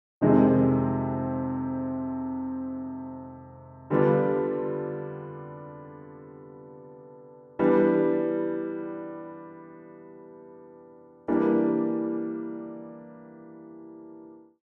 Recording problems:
none

